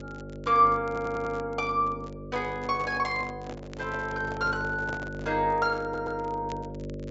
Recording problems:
treble cut off; nothing above 8 kHz
hum; 50 Hz, harmonics up to 600 Hz, SNR 11 dB
crackling; vinyl, SNR 28 dB
audio stuttering; at 1 s and at 6 s
handling noise; from 2.5 to 5.5 s; peak -6 dB vs average level

